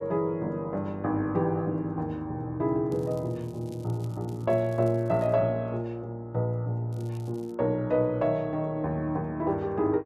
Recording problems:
crackle; from 3 to 5.5 s and at 7 s; loose cable, SNR 29 dB

